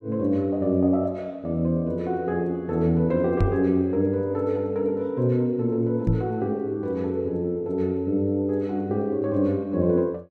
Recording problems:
knock on the microphone; at 3.5 s and at 6 s; peak +5 dB vs average level

